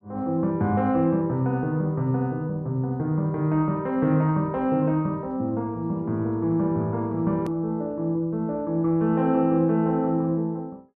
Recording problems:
edit click; at 7.5 s

